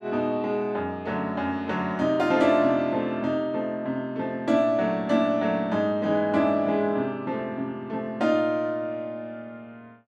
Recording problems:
none

